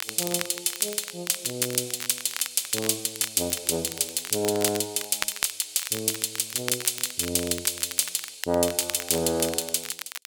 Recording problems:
crackling; vinyl, SNR 10 dB

